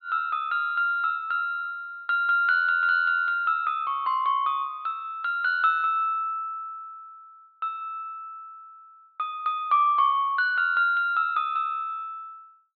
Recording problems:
treble missing; nothing above 4.3 kHz

